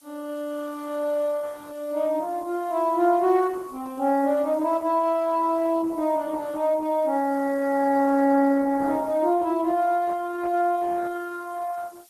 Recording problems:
lossy compression; Opus, log-spectral distance 3 dB
hiss; slope +2 dB per octave, SNR 29 dB

